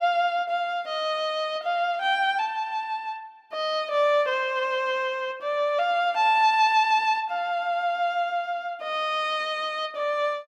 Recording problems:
none

